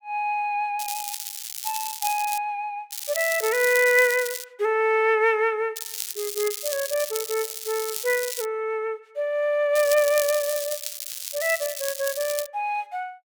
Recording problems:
crackle; 4 times, first at 1 s; loose cable, SNR 7 dB

